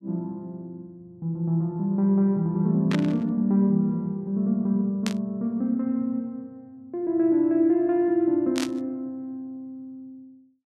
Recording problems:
burst of static; at 3 s, at 5 s and at 8.5 s; peak -3 dB vs average level

